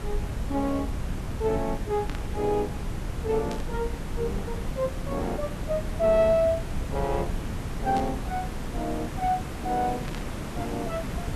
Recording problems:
background hiss; slope -6 dB per octave, SNR 8 dB
rumble; below 88 Hz, SNR 8 dB
static burst; 4 times, first at 2 s; peak -7 dB vs average level

